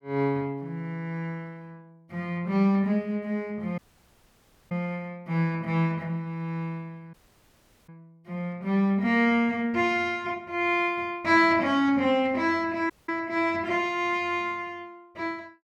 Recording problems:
audio cutting out; at 4 s for 1 s, at 7 s for 0.5 s and at 13 s

